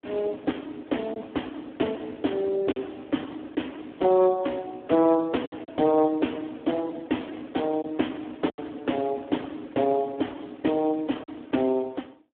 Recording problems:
phone line; 190 Hz to 3.4 kHz, Speex
packet loss; 2% of the sound replaced, filled with silence

